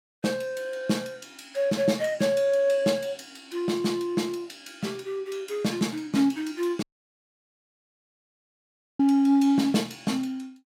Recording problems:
audio cutting out; at 7 s for 2 s

